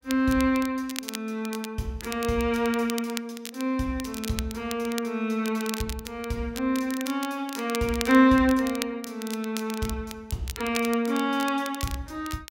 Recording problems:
crackle; vinyl, SNR 12 dB

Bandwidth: 16 kHz